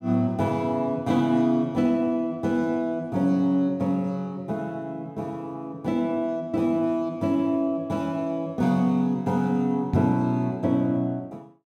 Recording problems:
microphone bump; at 10 s; peak +3 dB vs average level

